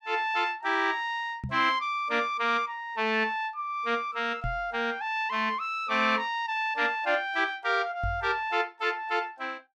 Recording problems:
knock on the microphone; at 1.5 s, at 4.5 s and at 8 s; peak -2 dB vs average level

